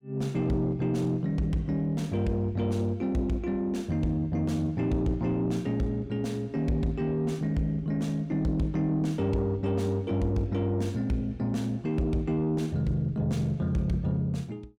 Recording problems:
distortion; soft clipping, signal-to-distortion ratio 11 dB

